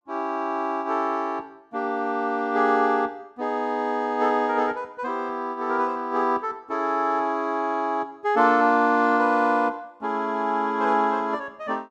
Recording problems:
none

